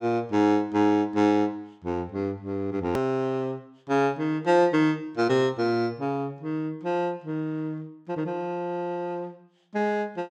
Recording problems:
click at an edit; at 3 s

